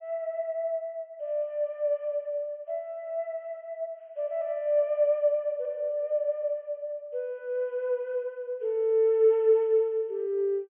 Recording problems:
low-pass filter; nothing above 3.2 kHz

